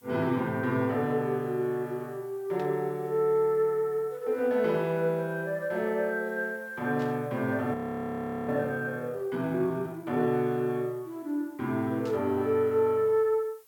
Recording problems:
hiss; slope 0 dB per octave, SNR 29 dB
burst of static; at 2.5 s, at 7 s and at 12 s; peak -15 dB vs average level
frozen audio; at 7.5 s for 0.5 s

